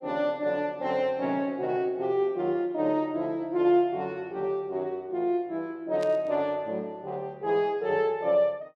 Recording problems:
burst of static; at 6 s; peak -11 dB vs average level

